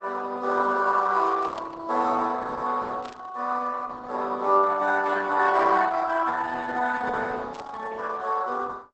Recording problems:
lossy compression; Opus, log-spectral distance 4 dB, nothing above 8 kHz
burst of static; at 1.5 s, at 3 s and at 7.5 s; peak -15 dB vs average level

